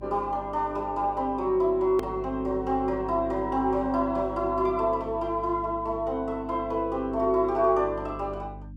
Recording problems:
hum; 50 Hz, harmonics up to 300 Hz, SNR 16 dB
edit click; at 2 s

